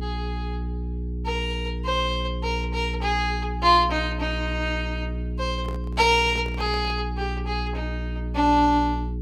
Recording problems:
electrical hum; 60 Hz, harmonics up to 420 Hz, SNR 6 dB
microphone handling noise; from 5.5 to 7 s; peak -9 dB vs average level

